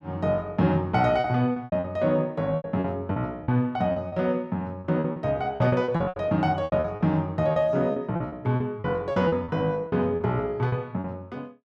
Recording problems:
lost packets; 13% of the sound replaced, filled with repeated pitch periods

